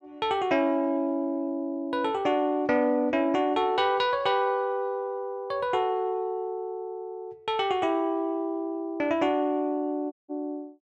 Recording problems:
audio cutting out; at 10 s

